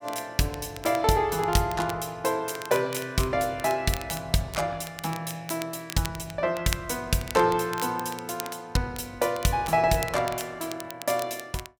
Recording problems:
crackling; vinyl, SNR 14 dB

